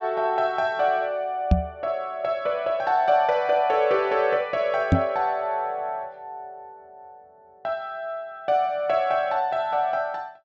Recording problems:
treble cut off; nothing above 7.8 kHz
microphone thump; at 1.5 s and at 5 s; peak +9 dB vs average level

